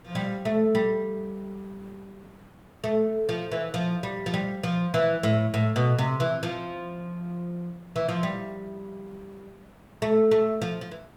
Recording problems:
hiss; SNR 26 dB

